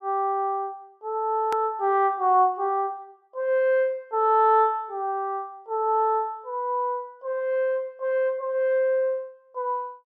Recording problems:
click at an edit; at 1.5 s

